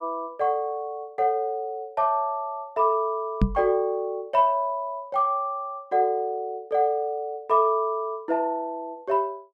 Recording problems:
knock on the microphone; at 3.5 s; peak +7 dB vs average level

